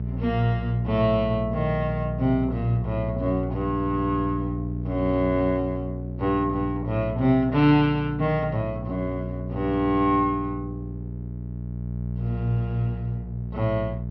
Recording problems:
treble missing; nothing above 5.7 kHz
hum; 60 Hz, harmonics up to 480 Hz, SNR 6 dB

